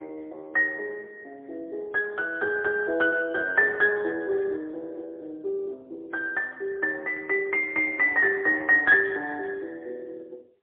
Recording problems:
telephone audio; 320 Hz to 3.3 kHz, AMR-NB, then MP3

